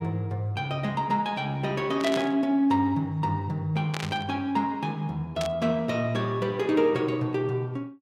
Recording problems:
static burst; at 2 s, at 4 s and at 5.5 s; peak -2 dB vs average level

